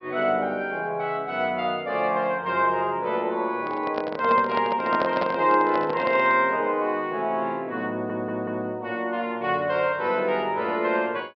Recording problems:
treble missing; nothing above 5.5 kHz
microphone handling noise; from 3.5 to 6.5 s; peak +1 dB vs average level
audio stuttering; at 8 s

